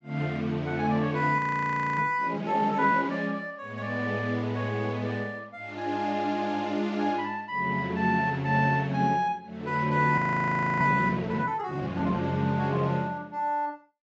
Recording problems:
treble cut off; nothing above 8 kHz
audio freezing; at 1.5 s for 0.5 s and at 10 s for 0.5 s

